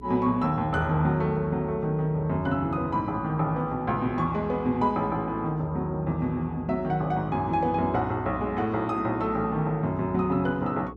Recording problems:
electrical hum; 60 Hz, harmonics up to 420 Hz, SNR 18 dB

